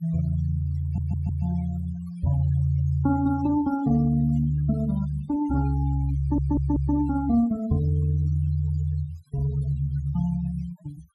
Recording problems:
denoising artefacts; signal-to-artefact ratio 22 dB
audio stuttering; at 1 s and at 6 s

